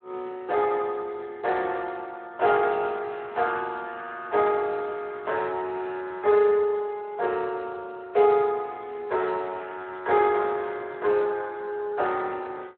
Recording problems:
telephone audio; 340 Hz to 3.8 kHz, Speex

